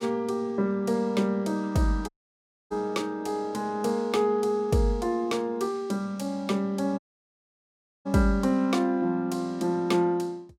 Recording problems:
audio cutting out; at 2 s for 0.5 s and at 7 s for 1 s

